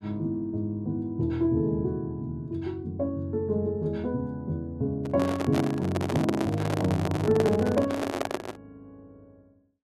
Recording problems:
microphone handling noise; from 5 to 8.5 s; peak +4 dB vs average level

